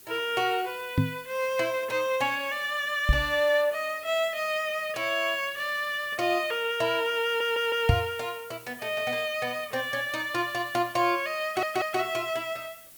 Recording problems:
hiss; SNR 19 dB
microphone bump; at 1 s, at 3 s and at 8 s; peak +9 dB vs average level
stutter; at 7.5 s and at 11 s

